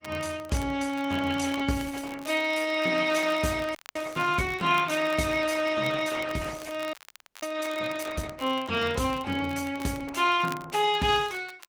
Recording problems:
codec artefacts; Opus, log-spectral distance 4 dB
crackle; vinyl, SNR 21 dB
audio freezing; at 4 s and at 7 s

